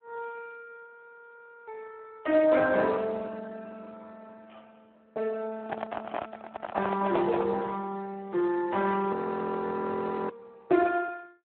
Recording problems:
telephone audio; 280 Hz to 2.6 kHz, Speex
frozen audio; at 1 s for 1 s and at 9 s for 1 s
microphone handling noise; from 5.5 to 7.5 s; peak +2 dB vs average level

